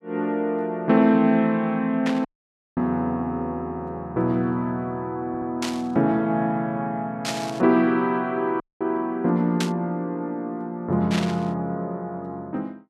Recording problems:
static burst; 5 times, first at 2 s; peak 0 dB vs average level
dropout; at 2.5 s for 0.5 s and at 8.5 s
stutter; at 5.5 s

